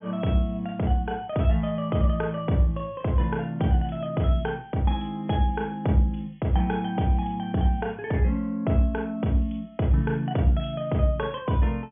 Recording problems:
low-pass filter; nothing above 3.4 kHz

